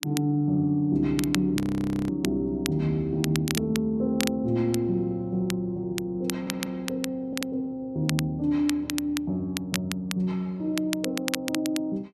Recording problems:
crackle; vinyl, SNR 8 dB
frozen audio; at 1.5 s for 0.5 s
audio stuttering; at 6.5 s and at 7 s

